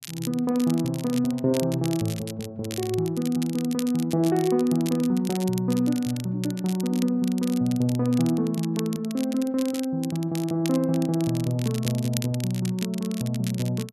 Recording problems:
crackling; vinyl, SNR 14 dB

